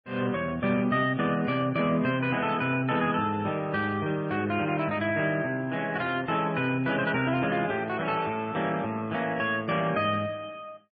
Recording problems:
codec artefacts; MP3, log-spectral distance 2 dB, nothing above 4.4 kHz

